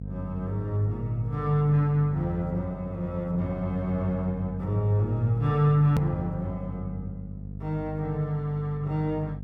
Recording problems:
mains hum; 50 Hz, harmonics up to 500 Hz, SNR 10 dB
edit click; at 6 s

